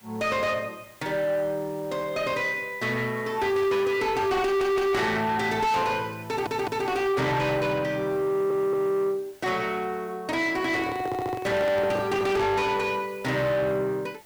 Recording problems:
distorted audio; soft clipping, signal-to-distortion ratio 7 dB
hiss; slope -2 dB per octave, SNR 25 dB
audio stuttering; 4 times, first at 4.5 s
handling noise; from 11 to 12 s; peak -1 dB vs average level

